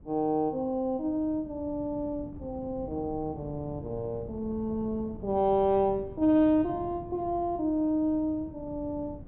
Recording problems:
treble cut off; nothing above 4 kHz
wind on the microphone; below 240 Hz, SNR 16 dB

